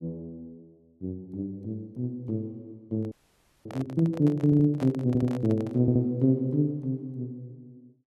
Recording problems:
handling noise; from 3 to 6 s; peak -8 dB vs average level
frozen audio; at 3 s for 0.5 s
audio stuttering; at 4.5 s, at 5 s and at 6 s

